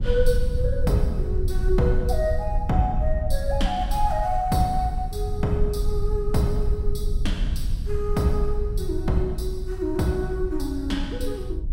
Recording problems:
low-frequency rumble; below 64 Hz, SNR 2 dB

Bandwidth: 16 kHz